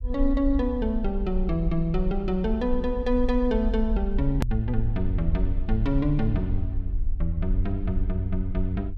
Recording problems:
low-frequency rumble; below 52 Hz, strongest tone 22 Hz, SNR 4 dB
hard cut with a click; at 4.5 s

